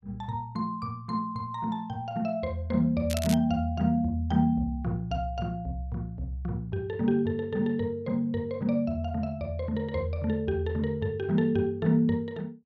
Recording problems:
crackling; at 3 s; loose cable, SNR 9 dB

